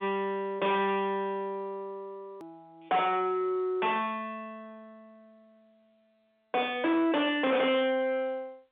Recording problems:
phone line; 280 Hz to 3.6 kHz, G.711
distorted audio; soft clipping, signal-to-distortion ratio 8 dB
click at an edit; at 2.5 s

